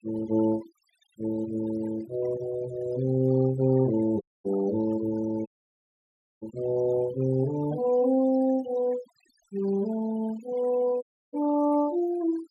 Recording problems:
denoising artefacts; signal-to-artefact ratio 18 dB
dropout; at 4 s, at 5.5 s for 1 s and at 11 s

